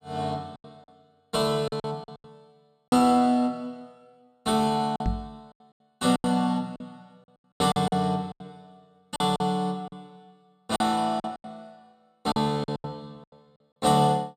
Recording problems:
lost packets; 12% of the sound replaced, filled with silence
knock on the microphone; at 5 s; peak +2 dB vs average level

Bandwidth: 15 kHz